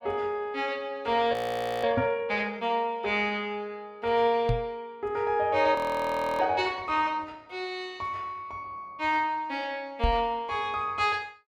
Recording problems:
audio freezing; at 1.5 s and at 6 s for 0.5 s
knock on the microphone; at 2 s, at 4.5 s and at 10 s; peak +4 dB vs average level

